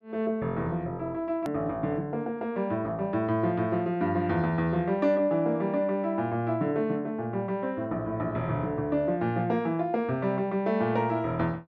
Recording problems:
edit click; at 1.5 s

